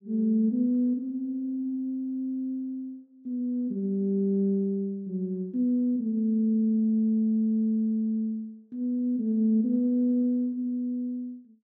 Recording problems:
none

